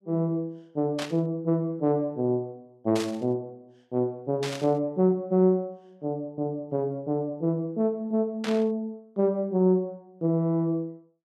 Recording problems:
static burst; 4 times, first at 1 s; peak -3 dB vs average level

